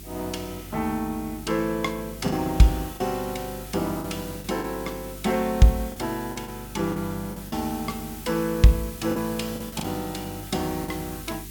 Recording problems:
hum; 50 Hz, harmonics up to 400 Hz, SNR 16 dB
hiss; SNR 14 dB
lost packets; 6% of the sound replaced, filled with the last packet

